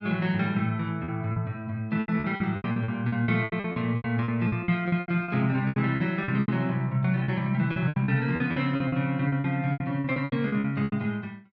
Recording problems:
packet loss; 18% of the sound replaced, filled with repeated pitch periods

